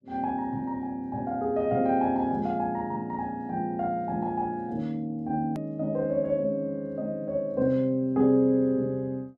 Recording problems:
hard cut with a click; at 5.5 s

